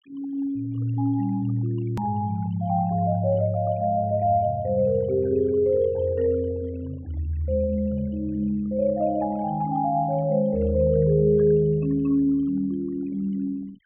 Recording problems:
treble cut off; nothing above 3.3 kHz
noise reduction artefacts; signal-to-artefact ratio 25 dB
click at an edit; at 2 s

